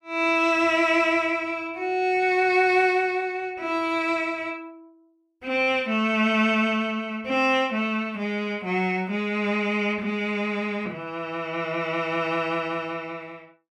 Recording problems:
none

